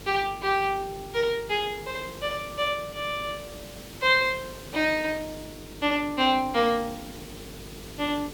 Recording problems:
hum; 50 Hz, harmonics up to 450 Hz, SNR 20 dB
hiss; slope -3 dB per octave, SNR 16 dB

